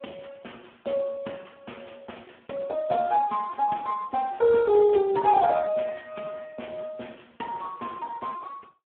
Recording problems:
telephone audio; 260 Hz to 3.5 kHz, Speex

